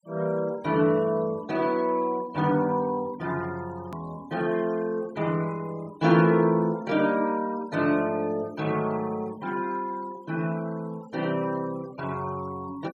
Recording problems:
denoising artefacts; signal-to-artefact ratio 24 dB
edit click; at 4 s

